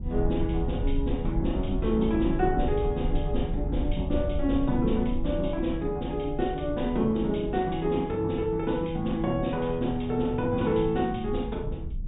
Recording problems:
low-pass filter; nothing above 4 kHz
rumble; below 72 Hz, SNR 7 dB

